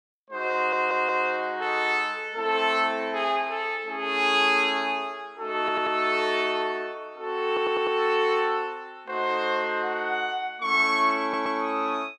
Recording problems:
audio stuttering; 4 times, first at 0.5 s

